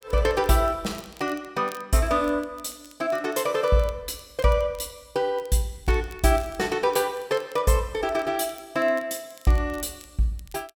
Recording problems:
crackle; vinyl, SNR 25 dB

